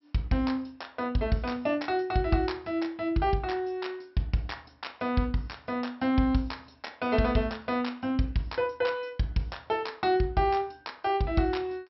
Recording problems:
low-pass filter; nothing above 5.6 kHz

